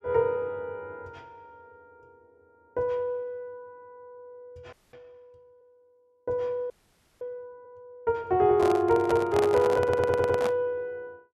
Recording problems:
frozen audio; at 4.5 s and at 6.5 s for 0.5 s
handling noise; from 8.5 to 11 s; peak -1 dB vs average level
audio stuttering; at 10 s

